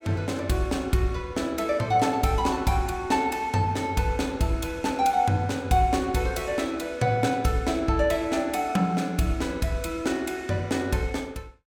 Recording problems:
none

